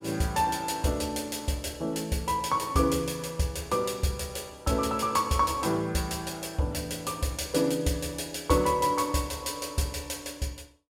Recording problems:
none

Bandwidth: 16 kHz